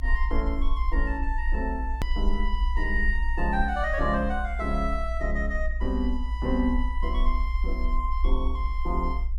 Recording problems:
low-frequency rumble; below 58 Hz, SNR 0 dB
hard cut with a click; at 2 s

